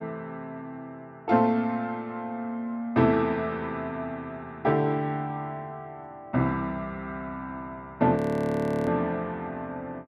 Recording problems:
frozen audio; at 8 s for 0.5 s

